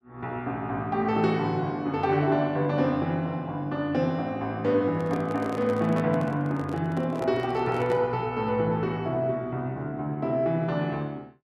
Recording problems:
microphone handling noise; from 5 to 8 s; peak -4 dB vs average level

